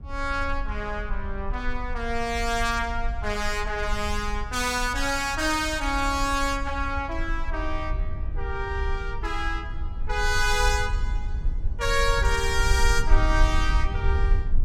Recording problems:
rumble; below 58 Hz, SNR 4 dB

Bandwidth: 16 kHz